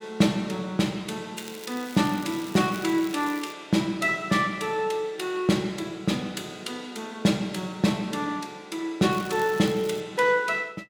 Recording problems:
crackling; from 1.5 to 3.5 s and at 9 s; loose cable, SNR 18 dB

